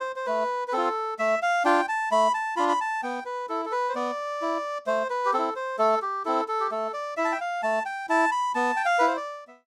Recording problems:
none

